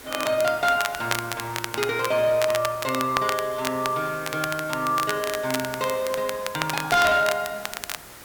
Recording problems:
distortion; hard clipping, signal-to-distortion ratio 12 dB
background hiss; slope -3 dB per octave, SNR 16 dB
crackling; vinyl, SNR 8 dB

